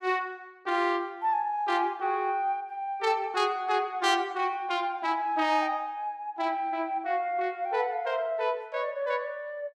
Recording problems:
none

